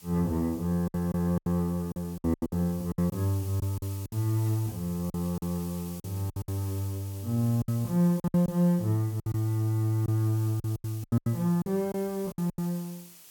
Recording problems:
background hiss; SNR 18 dB
lost packets; 12% of the sound replaced, filled with silence

